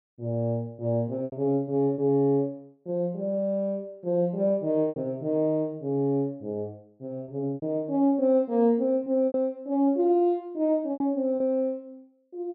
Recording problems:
lost packets; 5% of the sound replaced, filled with repeated pitch periods

